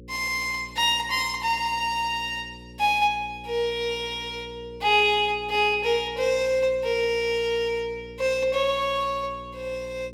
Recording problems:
electrical hum; 60 Hz, harmonics up to 540 Hz, SNR 21 dB

